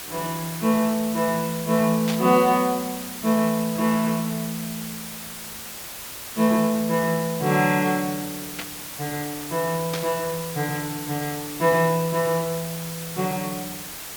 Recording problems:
background hiss; slope -1 dB per octave, SNR 9 dB
static burst; at 2 s, at 8.5 s and at 10 s; peak -3 dB vs average level

